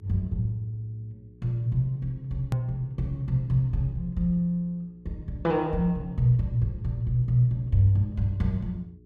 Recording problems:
hum; 60 Hz, harmonics up to 420 Hz, SNR 26 dB
click at an edit; at 2.5 s

